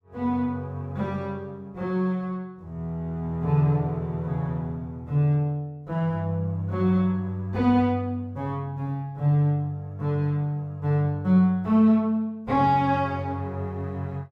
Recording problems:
none

